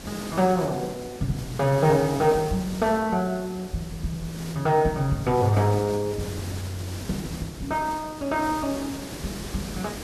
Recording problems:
hiss; SNR 12 dB

